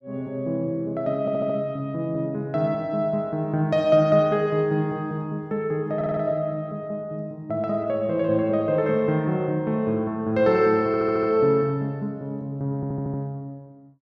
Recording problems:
audio stuttering; 4 times, first at 1 s

